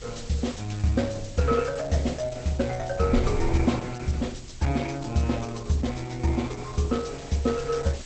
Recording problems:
lossy compression; Opus, log-spectral distance 7 dB, nothing above 8 kHz
background hiss; slope +2 dB per octave, SNR 19 dB
wind on the microphone; below 78 Hz, SNR 13 dB

